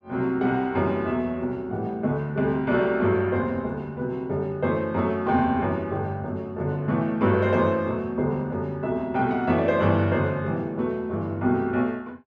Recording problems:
none

